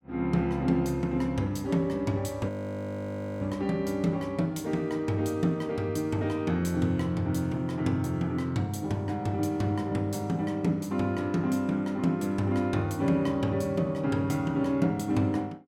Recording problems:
audio freezing; at 2.5 s for 1 s

